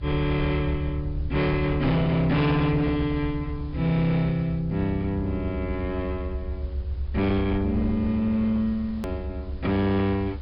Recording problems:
low-pass filter; nothing above 5.2 kHz
distortion; hard clipping, signal-to-distortion ratio 11 dB
hiss; SNR 27 dB
rumble; below 76 Hz, SNR 8 dB
edit click; at 9 s

